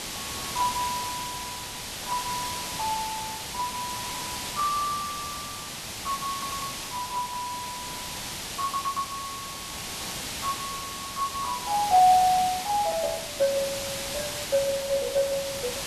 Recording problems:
lossy codec; Speex, log-spectral distance 2 dB
background hiss; slope 0 dB per octave, SNR 4 dB
audio stuttering; at 4 s, at 6.5 s and at 8.5 s

